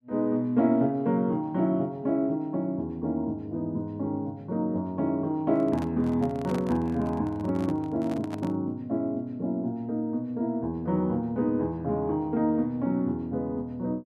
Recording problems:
microphone handling noise; from 5.5 to 8.5 s; peak -5 dB vs average level

